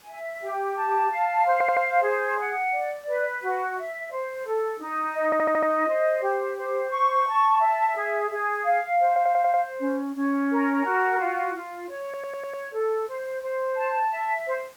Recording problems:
hiss; slope -2 dB per octave, SNR 28 dB
stutter; 4 times, first at 1.5 s

